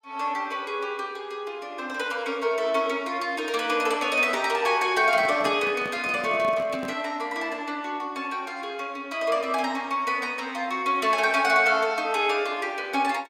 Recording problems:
handling noise; from 5 to 7 s; peak -7 dB vs average level

